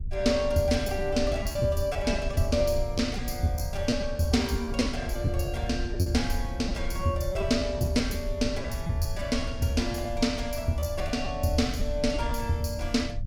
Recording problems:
rumble; below 80 Hz, SNR 7 dB
packet loss; 6% of the sound replaced, filled with repeated pitch periods

